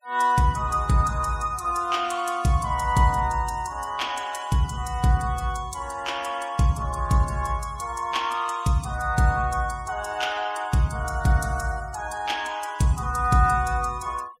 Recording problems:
denoising artefacts; signal-to-artefact ratio 22 dB

